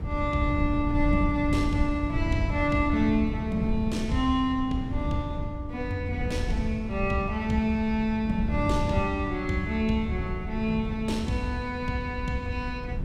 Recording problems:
wind noise; below 130 Hz, SNR 5 dB

